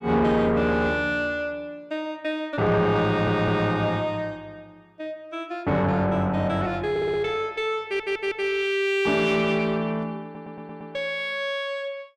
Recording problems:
distorted audio; soft clipping, signal-to-distortion ratio 11 dB
stutter; 4 times, first at 3 s

